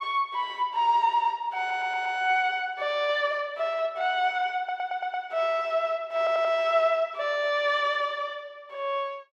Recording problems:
stutter; at 1.5 s, at 4.5 s and at 6 s

